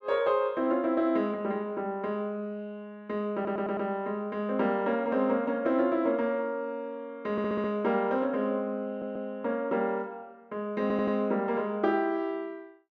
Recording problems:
stutter; 4 times, first at 3.5 s

